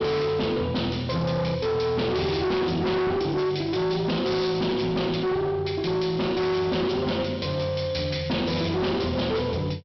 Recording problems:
treble cut off; nothing above 5.7 kHz
distortion; hard clipping, uneven, signal-to-distortion ratio 6 dB

